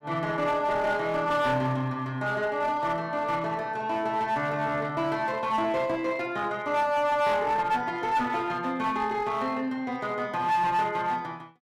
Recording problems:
distorted audio; hard clipping, uneven, signal-to-distortion ratio 11 dB

